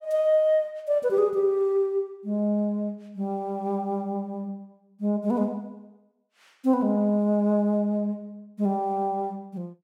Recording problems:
none

